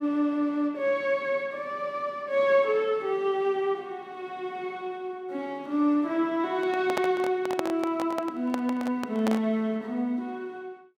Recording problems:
microphone handling noise; from 6.5 to 9.5 s; peak +2 dB vs average level

